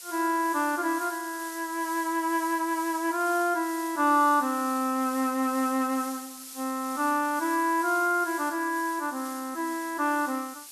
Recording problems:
background hiss; slope +3 dB per octave, SNR 13 dB

